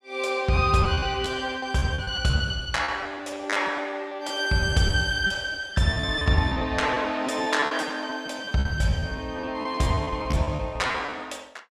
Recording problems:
packet loss; 16% of the sound replaced, filled with repeated pitch periods

